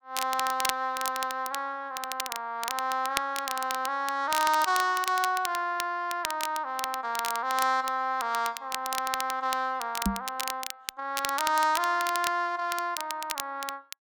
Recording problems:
crackling; vinyl, SNR 7 dB
microphone bump; at 10 s; peak +5 dB vs average level

